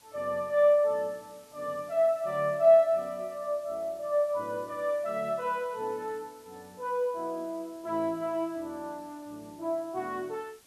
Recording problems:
background hiss; slope -1 dB per octave, SNR 27 dB

